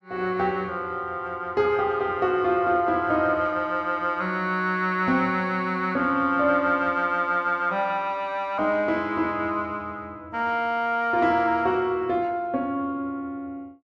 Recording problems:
none

